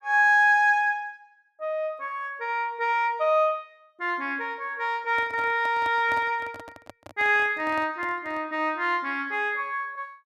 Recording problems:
microphone handling noise; from 5 to 8.5 s; peak -11 dB vs average level

